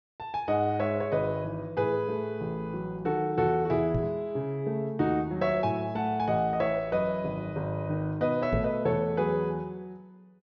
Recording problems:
treble missing; nothing above 6.3 kHz
knock on the microphone; at 4 s and at 8.5 s; peak +2 dB vs average level

